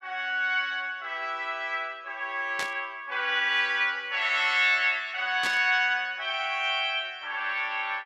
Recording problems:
static burst; at 2.5 s and at 5.5 s; peak -3 dB vs average level

